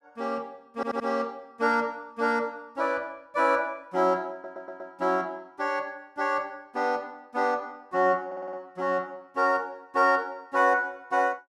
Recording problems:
stutter; at 1 s, at 4.5 s and at 8.5 s

